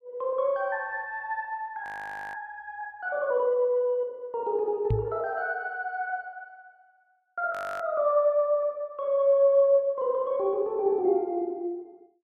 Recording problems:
audio freezing; at 2 s and at 7.5 s
microphone bump; at 5 s; peak +3 dB vs average level

